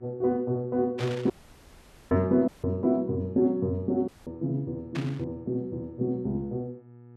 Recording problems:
hum; 60 Hz, harmonics up to 1.3 kHz, SNR 23 dB
burst of static; at 1 s and at 5 s; peak -6 dB vs average level
dropout; at 1.5 s for 1 s, at 2.5 s and at 4 s

